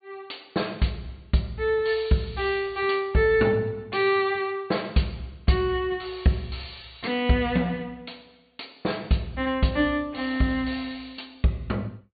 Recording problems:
low-pass filter; nothing above 4.6 kHz

